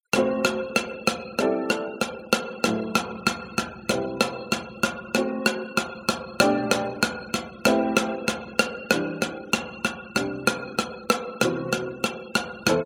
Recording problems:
noise reduction artefacts; signal-to-artefact ratio 20 dB

